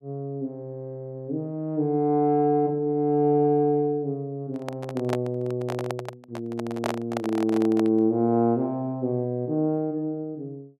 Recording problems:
handling noise; from 4.5 to 8 s; peak 0 dB vs average level

